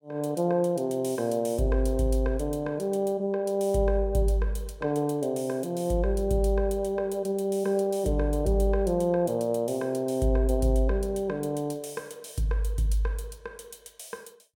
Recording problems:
none

